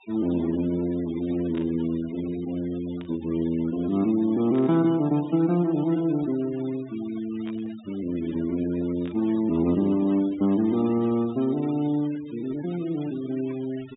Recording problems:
treble missing; nothing above 4 kHz
denoising artefacts; signal-to-artefact ratio 20 dB
static burst; 5 times, first at 1.5 s; peak -14 dB vs average level

